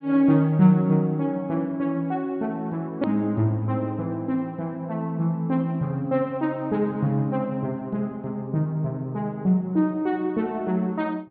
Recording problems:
treble cut off; nothing above 4.4 kHz
hard cut with a click; at 3 s

